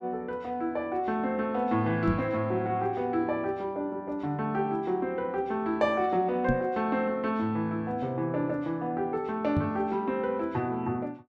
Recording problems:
microphone bump; at 2 s, at 6.5 s and at 9.5 s; peak +4 dB vs average level

